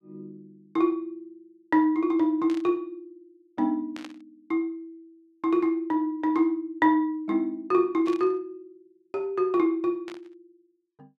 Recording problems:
burst of static; 4 times, first at 2.5 s; peak -12 dB vs average level

